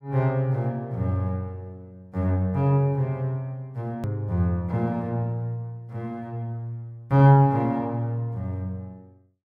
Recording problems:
edit click; at 4 s

